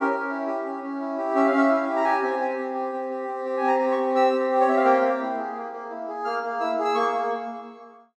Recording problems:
none

